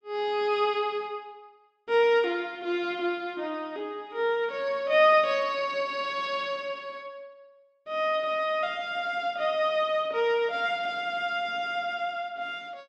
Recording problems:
none

